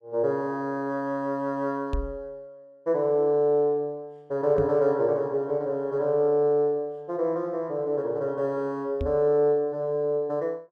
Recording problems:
knock on the microphone; at 2 s, at 4.5 s and at 9 s; peak 0 dB vs average level

